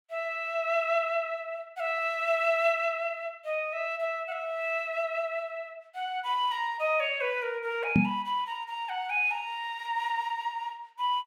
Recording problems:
microphone thump; at 8 s; peak +9 dB vs average level

